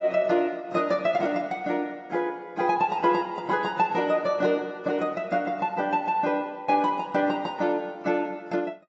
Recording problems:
lossy compression; AAC, log-spectral distance 2 dB, nothing above 7.6 kHz

